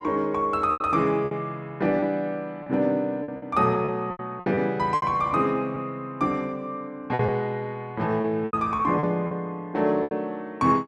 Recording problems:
packet loss; 9% of the sound replaced, filled with repeated pitch periods

